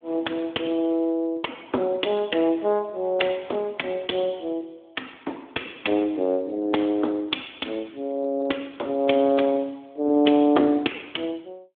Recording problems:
phone line; 220 Hz to 3.6 kHz, Speex

